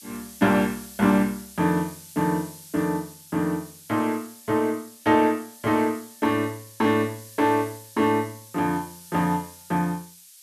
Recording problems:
hiss; slope +8 dB per octave, SNR 19 dB

